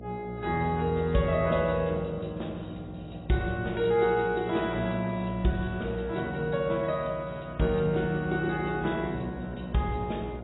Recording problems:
codec artefacts; AAC, log-spectral distance 4 dB, nothing above 3.8 kHz
hum; 60 Hz, harmonics up to 720 Hz, SNR 14 dB

